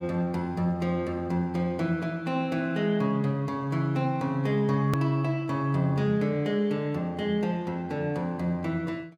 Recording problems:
edit click; at 5 s

